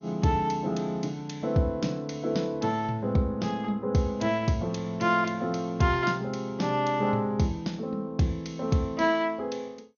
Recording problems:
codec artefacts; MP2, log-spectral distance 2 dB, nothing above 6.7 kHz

